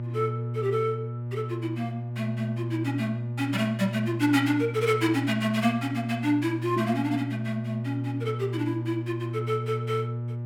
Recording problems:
hum; 60 Hz, harmonics up to 600 Hz, SNR 4 dB

